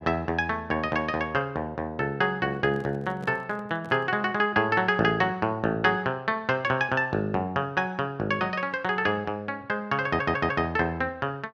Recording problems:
handling noise; from 2.5 to 4 s; peak -12 dB vs average level
audio stuttering; at 10 s

